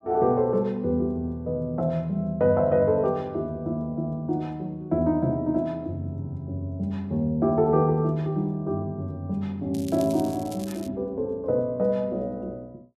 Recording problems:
crackling; from 9.5 to 11 s; loose cable, SNR 19 dB

